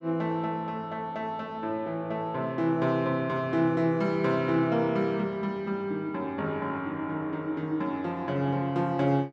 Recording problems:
none

